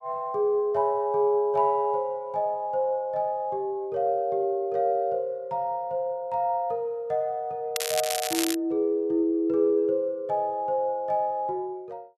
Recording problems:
crackle; at 8 s; loose cable, SNR 4 dB

